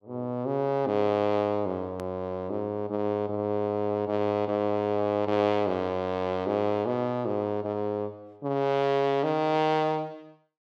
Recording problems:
hard cut with a click; at 2 s

